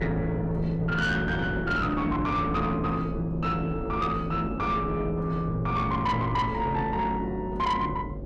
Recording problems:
distorted audio; soft clipping, signal-to-distortion ratio 12 dB
hum; 50 Hz, harmonics up to 550 Hz, SNR 12 dB
wind on the microphone; below 320 Hz, SNR 10 dB

